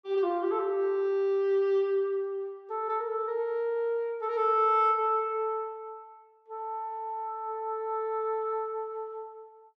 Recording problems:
none

